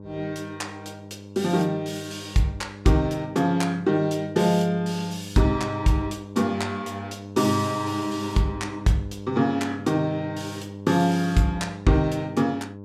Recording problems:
hum; 50 Hz, harmonics up to 1.1 kHz, SNR 14 dB

